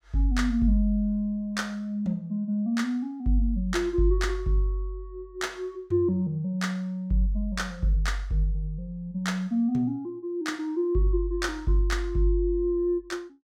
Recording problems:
none

